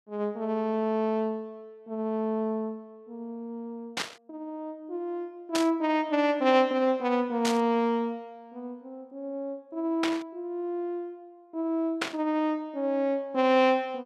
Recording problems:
static burst; 5 times, first at 4 s; peak +3 dB vs average level

